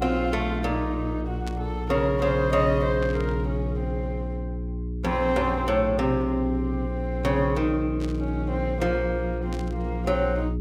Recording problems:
hum; 60 Hz, harmonics up to 420 Hz, SNR 4 dB
static burst; 4 times, first at 1.5 s; peak -9 dB vs average level

